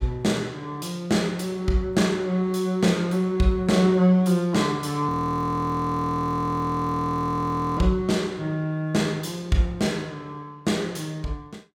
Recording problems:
audio freezing; at 5 s for 2.5 s

